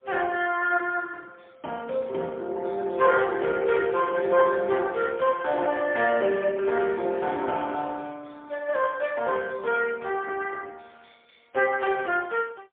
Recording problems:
telephone audio; 300 Hz to 3.4 kHz, AMR-NB, then MP3

